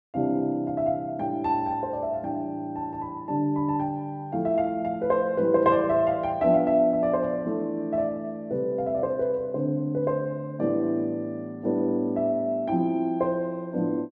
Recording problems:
none

